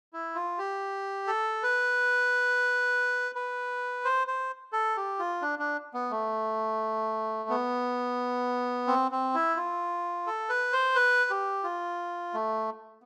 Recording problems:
none

